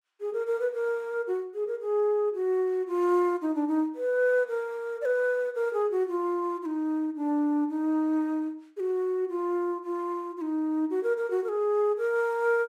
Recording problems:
none

